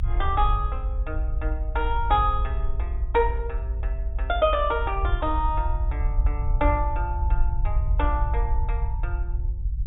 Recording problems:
low-pass filter; nothing above 4 kHz
rumble; below 58 Hz, SNR 0 dB

